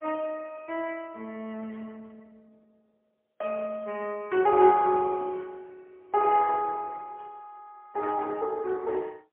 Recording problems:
telephone audio; 260 Hz to 3.4 kHz, AMR-NB, then MP3

